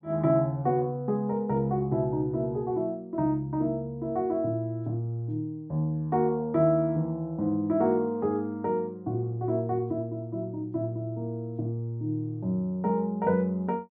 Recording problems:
none

